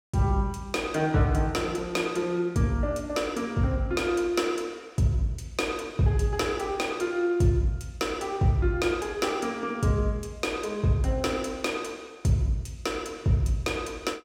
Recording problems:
none

